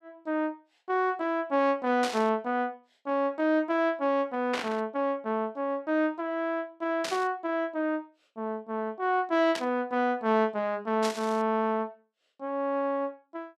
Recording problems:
static burst; 5 times, first at 2 s; peak 0 dB vs average level

